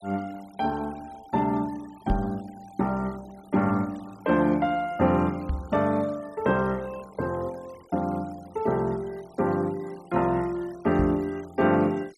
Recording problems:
denoising artefacts; signal-to-artefact ratio 25 dB
knock on the microphone; at 2 s, at 5.5 s and at 11 s; peak +3 dB vs average level

